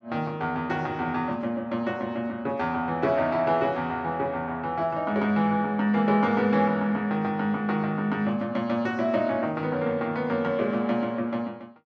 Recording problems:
none

